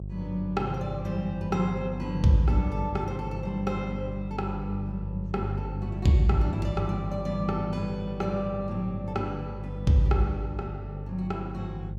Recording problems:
hum; 50 Hz, harmonics up to 400 Hz, SNR 7 dB

